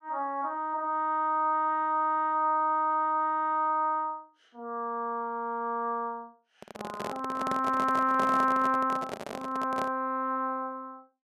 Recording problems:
microphone handling noise; from 6.5 to 10 s; peak -3 dB vs average level

